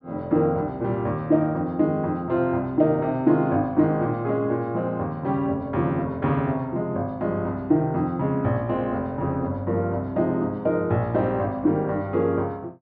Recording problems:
treble missing; nothing above 5.5 kHz

